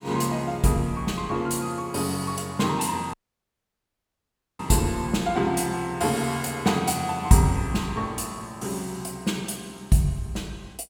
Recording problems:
audio cutting out; at 3 s for 1.5 s

